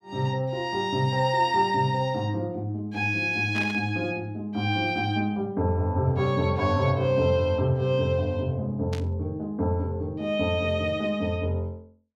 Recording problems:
burst of static; at 3.5 s and at 9 s; peak -6 dB vs average level

